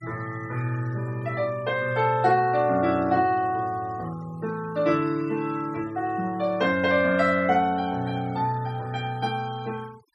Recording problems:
noise reduction artefacts; signal-to-artefact ratio 23 dB

